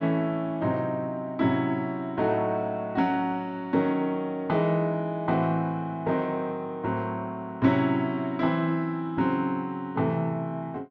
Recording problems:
none

